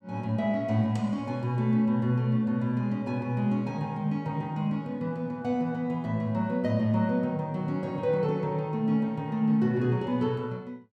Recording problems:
none

